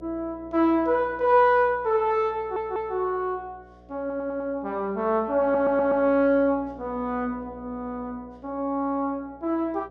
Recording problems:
electrical hum; 60 Hz, harmonics up to 720 Hz, SNR 24 dB
stutter; at 2.5 s, at 4 s and at 5.5 s

